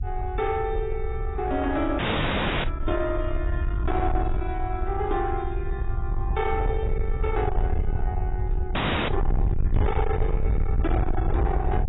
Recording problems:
lossy compression; AAC, log-spectral distance 3 dB, nothing above 3.8 kHz
distortion; soft clipping, signal-to-distortion ratio 6 dB
rumble; below 88 Hz, SNR 0 dB
dropout; at 2 s for 0.5 s and at 9 s

